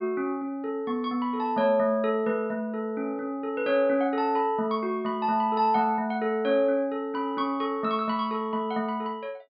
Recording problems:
treble cut off; nothing above 5.5 kHz

